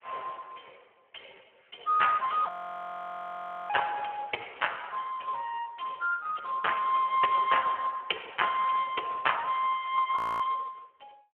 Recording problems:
telephone audio; 320 Hz to 3.2 kHz, Speex
frozen audio; at 2.5 s for 1 s and at 10 s

